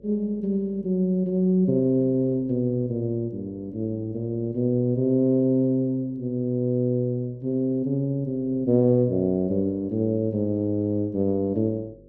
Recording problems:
electrical hum; 50 Hz, harmonics up to 550 Hz, SNR 28 dB

